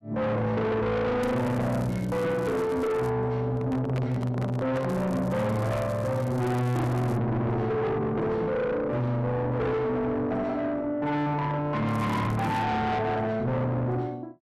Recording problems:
distortion; soft clipping, signal-to-distortion ratio 5 dB
crackling; from 1 to 3 s, from 5 to 7 s and at 12 s; loose cable, SNR 24 dB
handling noise; from 3.5 to 5 s; peak -1 dB vs average level

